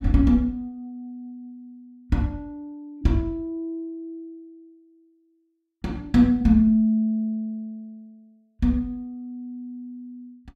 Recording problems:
none

